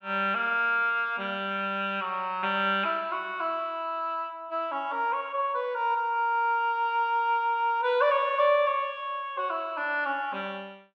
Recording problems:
none

